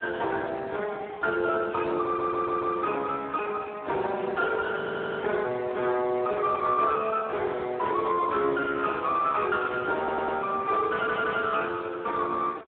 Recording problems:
phone line; 300 Hz to 3.6 kHz, Speex
stutter; 4 times, first at 2 s

